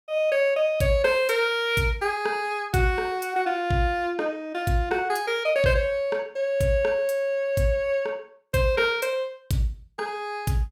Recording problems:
none

